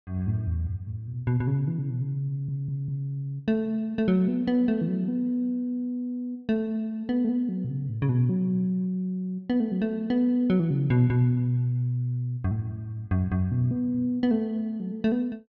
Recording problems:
stutter; at 2.5 s

